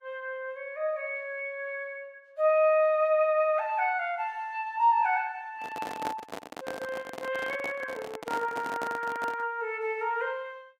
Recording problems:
lossy codec; Vorbis, log-spectral distance 2 dB
microphone handling noise; from 5.5 to 9.5 s; peak -2 dB vs average level

